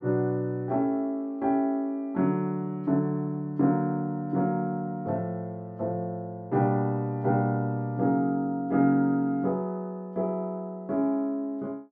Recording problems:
none

